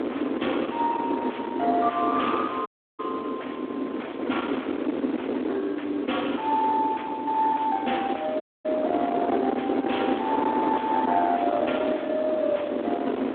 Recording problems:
telephone audio; 220 Hz to 3.6 kHz, Speex
distortion; soft clipping, signal-to-distortion ratio 8 dB
background hiss; SNR 28 dB
wind on the microphone; below 700 Hz, SNR 3 dB
dropout; at 2.5 s and at 8.5 s

